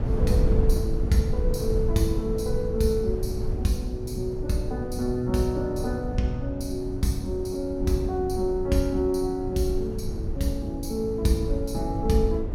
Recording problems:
hum; 50 Hz, harmonics up to 600 Hz, SNR 19 dB
rumble; below 100 Hz, SNR 4 dB

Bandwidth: 16.5 kHz